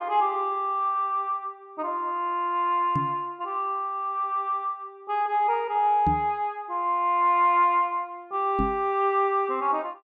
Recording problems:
knock on the microphone; at 3 s, at 6 s and at 8.5 s; peak +1 dB vs average level

